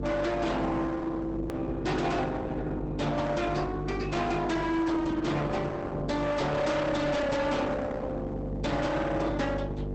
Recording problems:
codec artefacts; Opus, log-spectral distance 3 dB
distortion; hard clipping, signal-to-distortion ratio 6 dB
hum; 50 Hz, harmonics up to 750 Hz, SNR 7 dB
click at an edit; at 1.5 s

